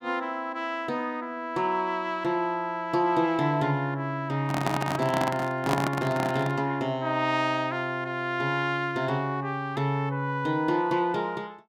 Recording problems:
microphone handling noise; from 4.5 to 6.5 s; peak +4 dB vs average level

